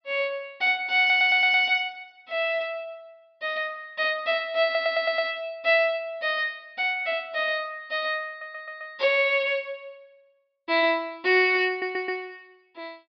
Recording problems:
treble cut off; nothing above 5.5 kHz
stutter; 4 times, first at 1 s

